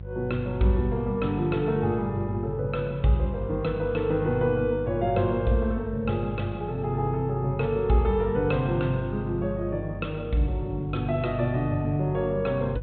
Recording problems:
treble cut off; nothing above 4 kHz
hum; 50 Hz, harmonics up to 550 Hz, SNR 10 dB

